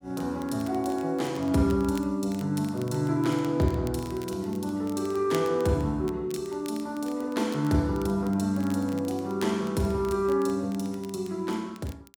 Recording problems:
crackling; vinyl, SNR 22 dB

